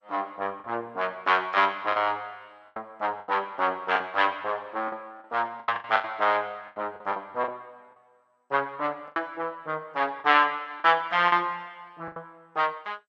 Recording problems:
lossy codec; MP2, log-spectral distance 2 dB
lost packets; 9% of the sound replaced, filled with the last packet

